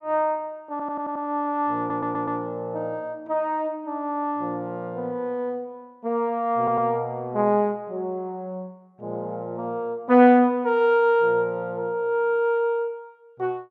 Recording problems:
audio stuttering; at 0.5 s, at 2 s and at 6.5 s

